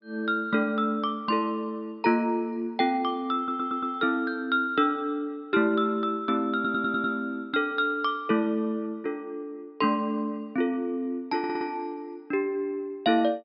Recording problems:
treble missing; nothing above 5.5 kHz
stutter; at 3.5 s, at 6.5 s and at 11 s

